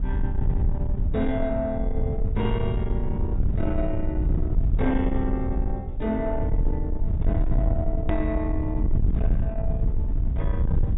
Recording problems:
treble cut off; nothing above 4 kHz
distorted audio; soft clipping, signal-to-distortion ratio 10 dB
rumble; below 86 Hz, SNR -3 dB
edit click; at 8 s

